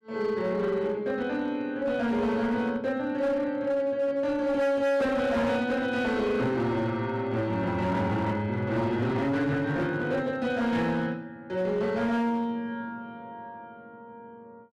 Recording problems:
distorted audio; hard clipping, signal-to-distortion ratio 11 dB

